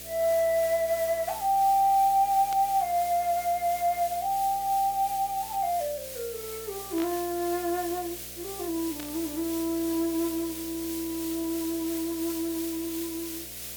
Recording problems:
hum; 60 Hz, harmonics up to 720 Hz, SNR 23 dB
hiss; slope +4 dB per octave, SNR 10 dB
burst of static; at 2.5 s, at 7 s and at 9 s; peak -8 dB vs average level

